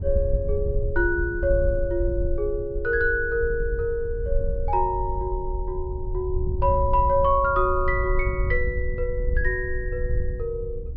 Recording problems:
treble cut off; nothing above 5.5 kHz
wind on the microphone; below 70 Hz, SNR 4 dB

